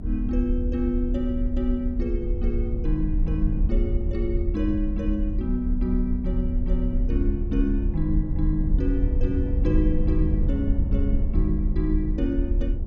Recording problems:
rumble; below 72 Hz, strongest tone 34 Hz, SNR -1 dB

